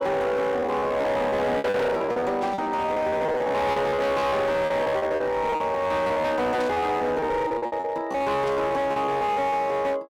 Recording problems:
distorted audio; hard clipping, signal-to-distortion ratio 8 dB
lost packets; 16% of the sound replaced, filled with repeated pitch periods
static burst; at 2.5 s, at 6.5 s and at 8.5 s; peak -12 dB vs average level

